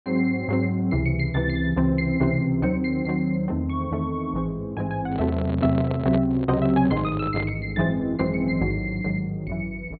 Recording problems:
treble missing; nothing above 4.3 kHz
microphone handling noise; from 5 to 7.5 s; peak -3 dB vs average level

